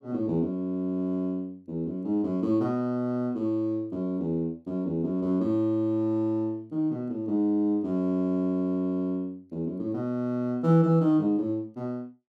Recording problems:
none

